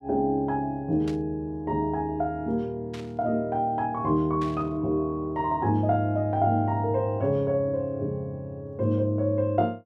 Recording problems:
burst of static; at 1 s, at 3 s and at 4.5 s; peak -11 dB vs average level

